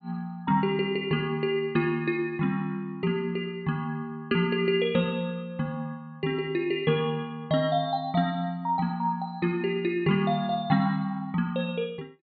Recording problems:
low-pass filter; nothing above 4.2 kHz

